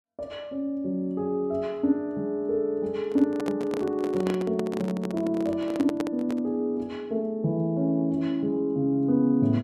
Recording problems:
microphone handling noise; from 3 to 6.5 s; peak 0 dB vs average level

